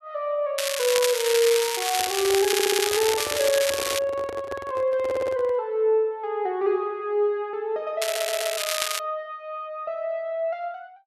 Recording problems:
crackling; from 0.5 to 4 s and at 8 s; loose cable, SNR 1 dB
handling noise; from 2 to 5.5 s; peak -5 dB vs average level
stutter; at 2.5 s, at 5 s and at 8 s

